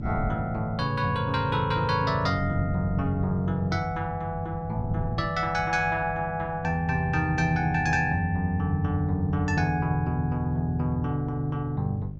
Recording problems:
electrical hum; 50 Hz, harmonics up to 550 Hz, SNR 13 dB
wind on the microphone; below 180 Hz, SNR 15 dB

